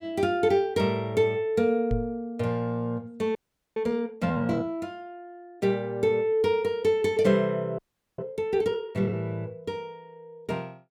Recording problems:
knock on the microphone; at 2 s; peak +1 dB vs average level
audio freezing; at 3.5 s and at 8 s

